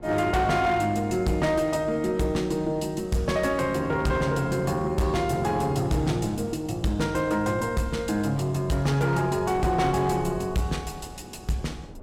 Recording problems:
distortion; hard clipping, uneven, signal-to-distortion ratio 12 dB
wind on the microphone; below 380 Hz, SNR 19 dB

